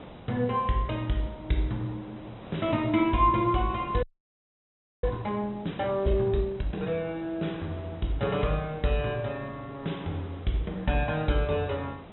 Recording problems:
treble cut off; nothing above 3.9 kHz
background hiss; SNR 17 dB
frozen audio; at 4 s for 1 s

